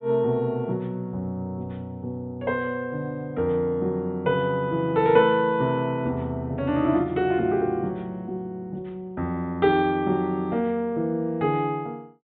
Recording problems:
treble missing; nothing above 4 kHz

